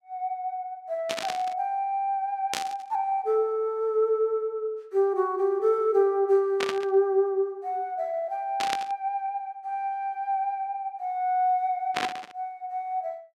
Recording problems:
static burst; 5 times, first at 1 s; peak +3 dB vs average level

